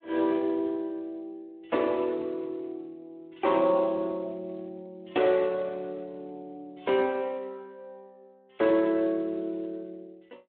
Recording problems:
telephone audio; 260 Hz to 3.7 kHz, Speex

